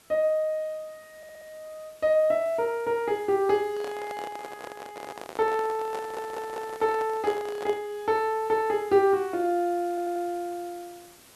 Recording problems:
background hiss; slope -2 dB per octave, SNR 25 dB
stutter; at 1 s, at 6 s and at 10 s
handling noise; from 3.5 to 8 s; peak -7 dB vs average level

